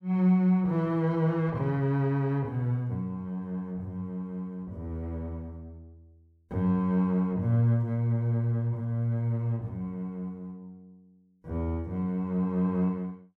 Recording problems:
none

